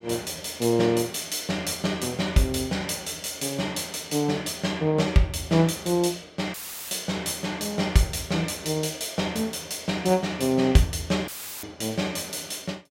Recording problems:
dropout; at 6.5 s and at 11 s; filled with static

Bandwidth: 16 kHz